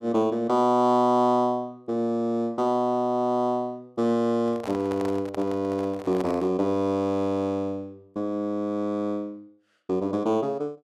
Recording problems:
microphone handling noise; from 4.5 to 6.5 s; peak -7 dB vs average level

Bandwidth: 13.5 kHz